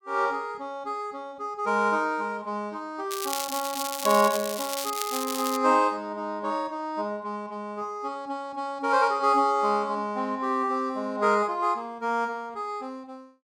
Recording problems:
crackling; from 3 to 5.5 s; loose cable, SNR 6 dB

